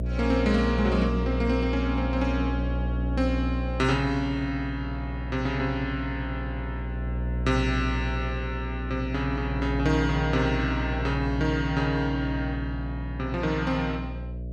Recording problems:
hum; 60 Hz, harmonics up to 660 Hz, SNR 3 dB

